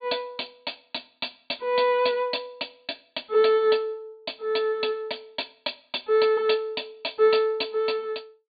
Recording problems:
low-pass filter; nothing above 4.6 kHz

